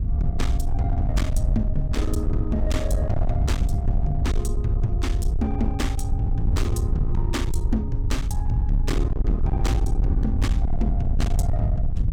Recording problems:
distortion; hard clipping, uneven, signal-to-distortion ratio 7 dB
electrical hum; 50 Hz, harmonics up to 750 Hz, SNR 21 dB
low-frequency rumble; below 86 Hz, SNR -4 dB

